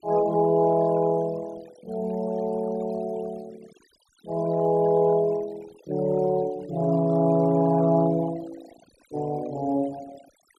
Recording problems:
denoising artefacts; signal-to-artefact ratio 23 dB

